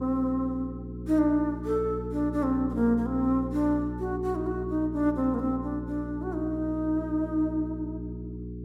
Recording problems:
hum; 60 Hz, harmonics up to 420 Hz, SNR 9 dB

